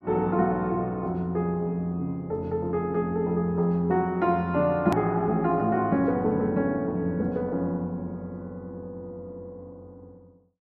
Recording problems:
edit click; at 5 s

